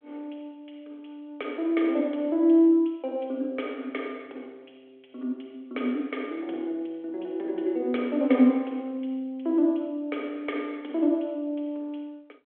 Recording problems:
telephone audio; 220 Hz to 3.5 kHz, G.726

